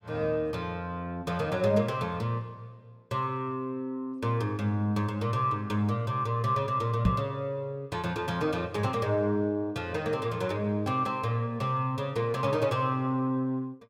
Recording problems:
microphone bump; at 7 s; peak +7 dB vs average level

